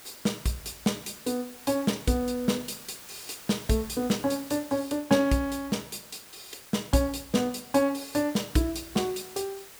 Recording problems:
background hiss; slope -1 dB per octave, SNR 17 dB

